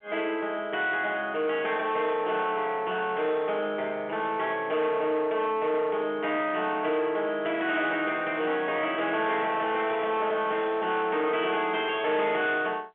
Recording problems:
telephone audio; 190 Hz to 3.7 kHz, G.711
distorted audio; soft clipping, signal-to-distortion ratio 11 dB

